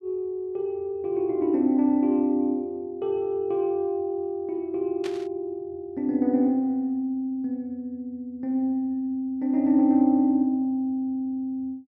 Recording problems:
burst of static; at 5 s; peak -9 dB vs average level

